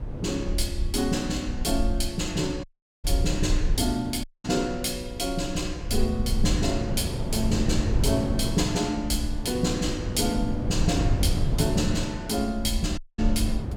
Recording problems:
low-frequency rumble; below 62 Hz, SNR 5 dB
wind noise; below 260 Hz, SNR 5 dB
dropout; at 2.5 s, at 4 s and at 13 s

